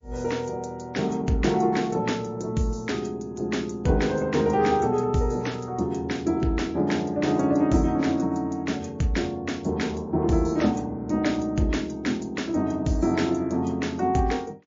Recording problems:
codec artefacts; MP3, log-spectral distance 2 dB

